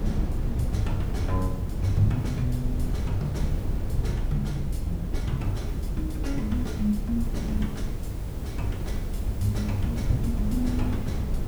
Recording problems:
mains hum; 50 Hz, harmonics up to 500 Hz, SNR 11 dB
background hiss; slope -4 dB per octave, SNR 18 dB
wind noise; below 120 Hz, SNR 1 dB

